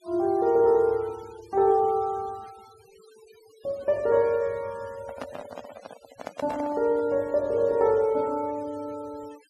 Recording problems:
denoising artefacts; signal-to-artefact ratio 26 dB
handling noise; from 5 to 7 s; peak -6 dB vs average level

